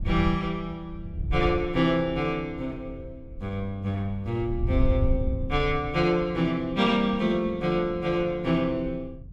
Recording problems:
wind noise; below 90 Hz, SNR 8 dB

